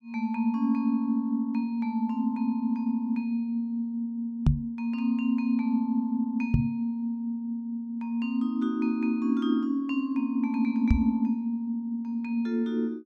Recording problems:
microphone thump; at 4.5 s, at 6.5 s and at 11 s; peak +10 dB vs average level

